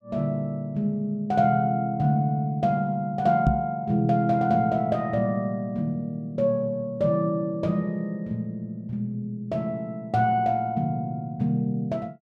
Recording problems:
microphone bump; at 3.5 s; peak +7 dB vs average level

